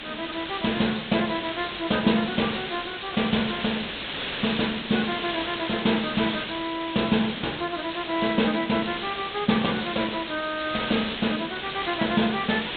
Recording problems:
low-pass filter; nothing above 4 kHz
hiss; SNR 6 dB

